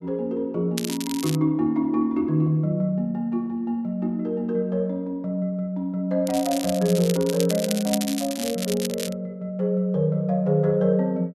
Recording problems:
crackle; at 1 s and from 6.5 to 9 s; loose cable, SNR 8 dB

